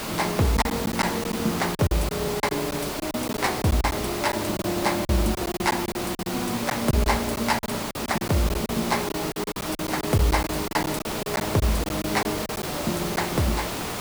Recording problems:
background hiss; slope -4 dB per octave, SNR 4 dB
packet loss; 11% of the sound replaced, filled with silence

